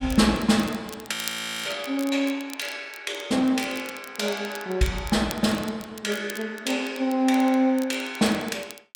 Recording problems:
crackling; vinyl, SNR 17 dB
audio freezing; at 1 s for 0.5 s

